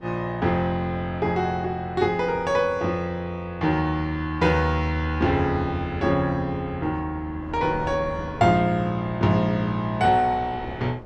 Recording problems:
wind noise; below 500 Hz, SNR 20 dB

